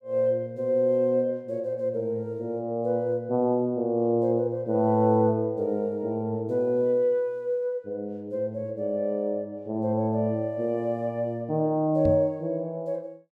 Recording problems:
microphone bump; at 12 s; peak 0 dB vs average level

